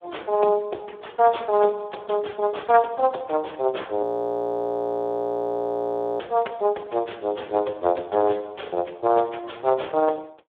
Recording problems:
telephone audio; 280 Hz to 3.6 kHz, Speex
frozen audio; at 4 s for 2 s

